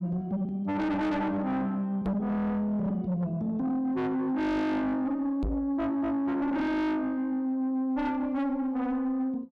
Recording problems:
distortion; soft clipping, signal-to-distortion ratio 7 dB
knock on the microphone; at 2 s and at 5.5 s; peak +2 dB vs average level

